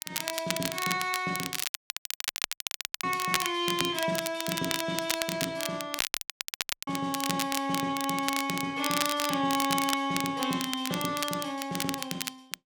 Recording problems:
crackling; vinyl, SNR 3 dB
dropout; at 1.5 s for 1.5 s and at 6 s for 1 s

